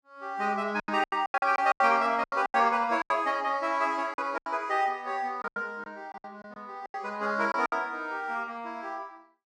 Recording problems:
packet loss; 13% of the sound replaced, filled with silence

